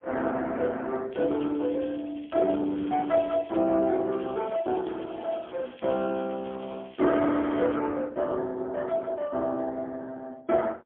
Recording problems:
phone line; 220 Hz to 3.3 kHz, AMR-NB, then MP3
crackle; from 1 to 3.5 s and from 4 to 8 s; loose cable, SNR 23 dB

